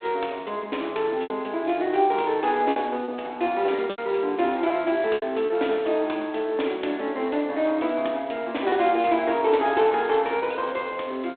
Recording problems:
telephone audio; 260 Hz to 3.9 kHz, G.726
packet loss; 5% of the sound replaced, filled with repeated pitch periods

